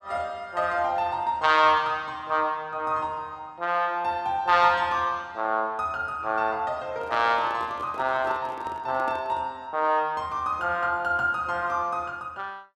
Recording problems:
handling noise; from 7 to 9.5 s; peak -11 dB vs average level

